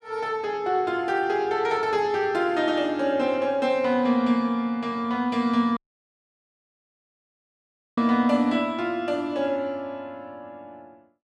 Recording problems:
dropout; at 6 s for 2 s

